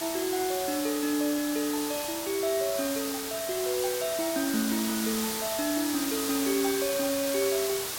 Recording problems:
hiss; slope 0 dB per octave, SNR 3 dB

